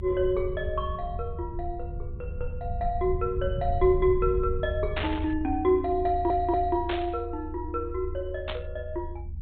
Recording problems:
treble missing; nothing above 4 kHz
low-frequency rumble; below 80 Hz, SNR 7 dB
static burst; at 5 s, at 7 s and at 8.5 s; peak +1 dB vs average level
audio stuttering; at 6 s

